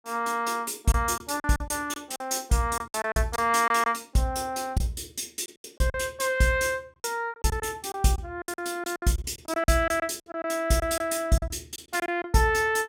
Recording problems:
lost packets; 11% of the sound replaced, filled with silence

